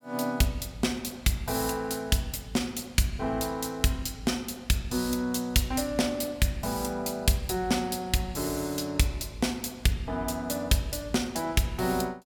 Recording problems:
none

